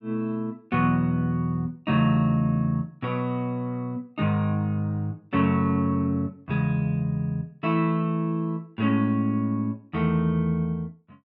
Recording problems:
none

